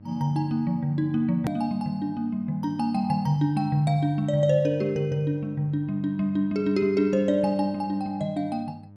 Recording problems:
hum; 50 Hz, harmonics up to 700 Hz, SNR 22 dB
hard cut with a click; at 1.5 s

